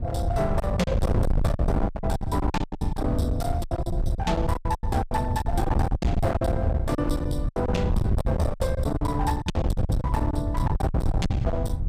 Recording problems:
distortion; hard clipping, uneven, signal-to-distortion ratio 6 dB
wind on the microphone; below 130 Hz, SNR -1 dB
lost packets; 15% of the sound replaced, filled with silence

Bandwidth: 15 kHz